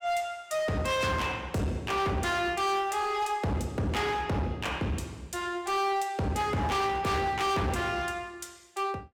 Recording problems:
distorted audio; hard clipping, signal-to-distortion ratio 7 dB

